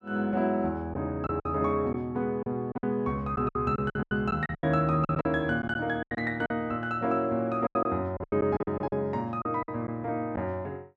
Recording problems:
packet loss; 12% of the sound replaced, filled with silence

